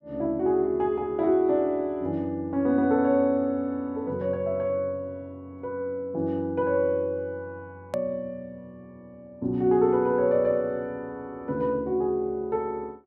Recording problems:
edit click; at 8 s

